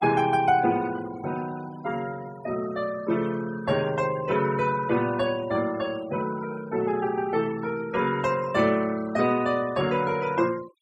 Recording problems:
noise reduction artefacts; signal-to-artefact ratio 18 dB

